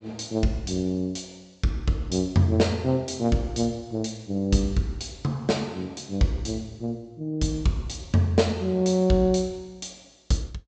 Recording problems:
low-pass filter; nothing above 8 kHz

